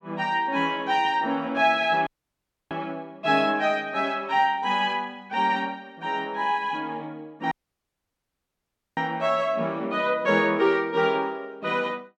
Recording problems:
audio cutting out; at 2 s for 0.5 s and at 7.5 s for 1.5 s

